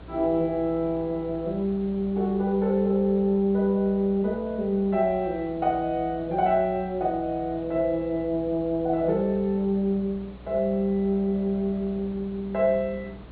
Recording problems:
low-pass filter; nothing above 4.3 kHz
hum; 60 Hz, harmonics up to 720 Hz, SNR 21 dB
hiss; SNR 22 dB

